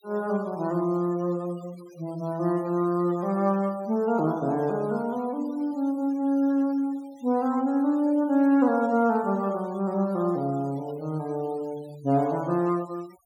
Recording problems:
noise reduction artefacts; signal-to-artefact ratio 26 dB

